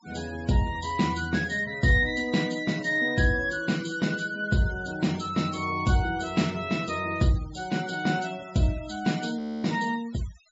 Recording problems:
treble cut off; nothing above 8 kHz
noise reduction artefacts; signal-to-artefact ratio 19 dB
audio freezing; at 9.5 s

